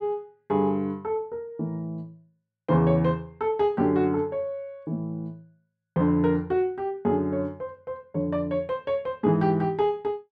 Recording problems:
none

